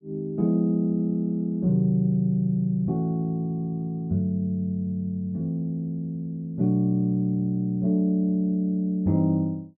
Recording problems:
none

